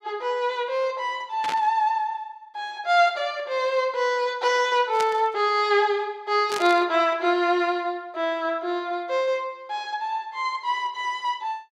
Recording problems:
burst of static; at 1.5 s, at 5 s and at 6.5 s; peak -4 dB vs average level

